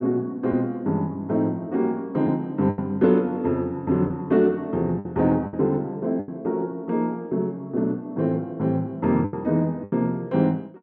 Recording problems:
lost packets; 4% of the sound replaced, filled with the last packet

